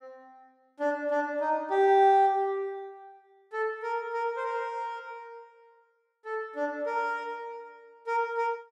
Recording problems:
none

